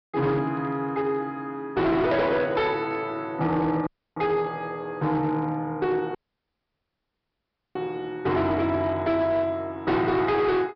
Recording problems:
treble missing; nothing above 5.5 kHz
distortion; hard clipping, signal-to-distortion ratio 11 dB
dropout; at 4 s and at 6 s for 1.5 s

